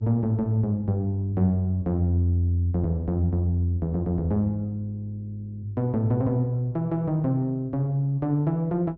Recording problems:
treble missing; nothing above 7.8 kHz
hum; 50 Hz, harmonics up to 400 Hz, SNR 27 dB

